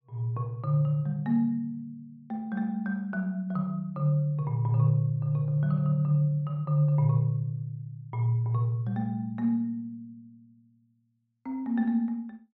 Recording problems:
none

